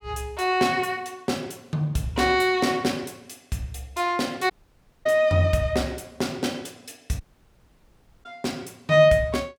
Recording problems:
audio cutting out; at 4.5 s for 0.5 s and at 7 s for 1 s

